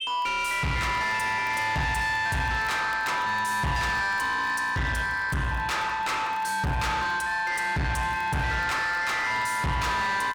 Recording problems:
distorted audio; soft clipping, signal-to-distortion ratio 7 dB
crackling; vinyl, SNR 29 dB

